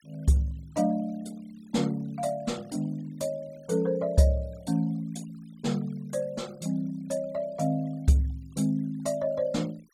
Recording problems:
noise reduction artefacts; signal-to-artefact ratio 26 dB

